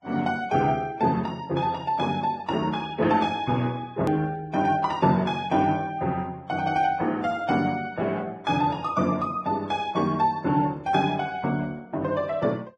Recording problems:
codec artefacts; Vorbis, log-spectral distance 2 dB, nothing above 13.3 kHz
edit click; at 4 s

